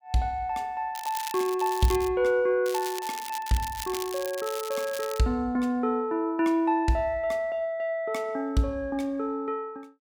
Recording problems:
crackle; from 1 to 2 s and from 2.5 to 5 s; loose cable, SNR 11 dB

